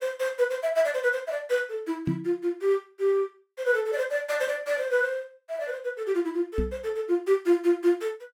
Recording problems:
microphone bump; at 2 s and at 6.5 s; peak +2 dB vs average level

